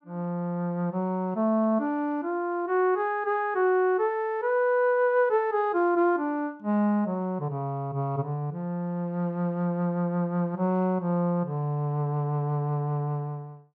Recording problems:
none

